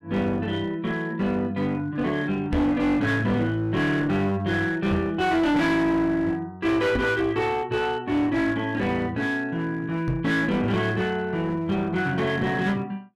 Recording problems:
distortion; hard clipping, uneven, signal-to-distortion ratio 9 dB
knock on the microphone; 4 times, first at 2.5 s; peak +1 dB vs average level

